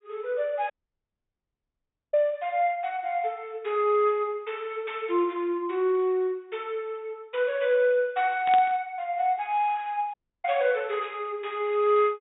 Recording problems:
treble cut off; nothing above 4 kHz
audio cutting out; at 0.5 s for 1.5 s and at 10 s
static burst; at 8.5 s; peak -3 dB vs average level

